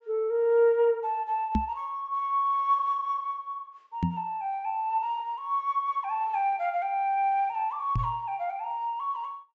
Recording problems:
treble cut off; nothing above 8 kHz
microphone thump; at 1.5 s, at 4 s and at 8 s; peak +5 dB vs average level

